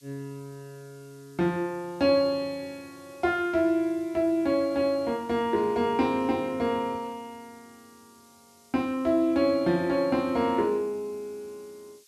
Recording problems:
hiss; slope +7 dB per octave, SNR 30 dB

